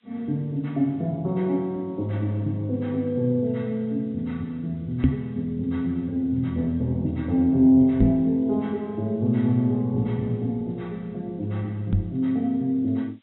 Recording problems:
treble cut off; nothing above 3.9 kHz
hiss; SNR 42 dB
knock on the microphone; at 5 s, at 8 s and at 12 s; peak +8 dB vs average level

